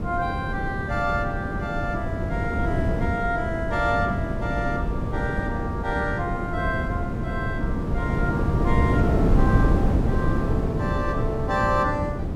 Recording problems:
wind noise; below 270 Hz, SNR -2 dB

